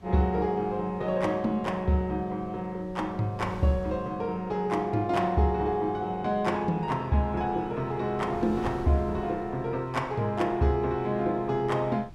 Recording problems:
wind on the microphone; below 240 Hz, SNR 20 dB

